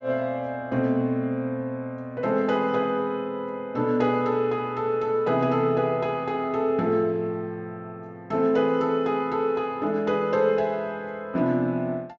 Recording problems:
treble missing; nothing above 7.4 kHz

